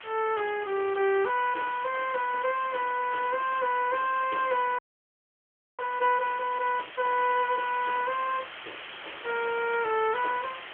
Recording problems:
phone line; 300 Hz to 3.3 kHz, AMR-NB
background hiss; SNR 14 dB
audio freezing; at 5 s for 1 s

